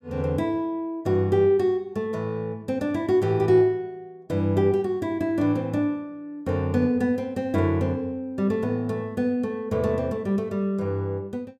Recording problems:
none

